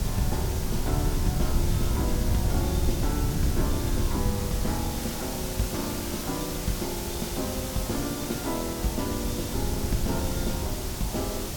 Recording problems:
background hiss; SNR 3 dB
rumble; below 120 Hz, SNR 0 dB
wind on the microphone; below 100 Hz, SNR 11 dB

